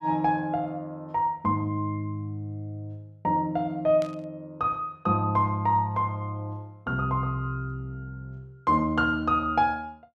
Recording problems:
burst of static; at 4 s; peak -12 dB vs average level

